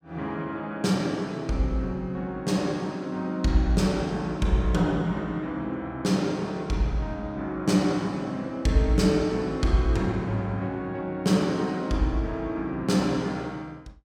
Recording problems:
none

